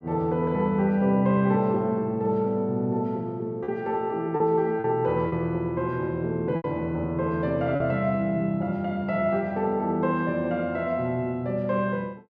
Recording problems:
lost packets; 2% of the sound replaced, filled with repeated pitch periods

